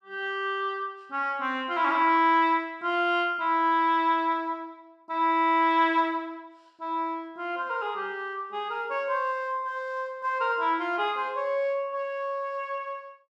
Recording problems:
none

